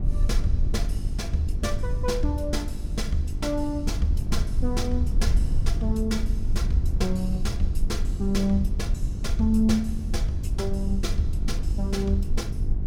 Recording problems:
electrical hum; 50 Hz, harmonics up to 800 Hz, SNR 14 dB
low-frequency rumble; below 70 Hz, SNR 0 dB

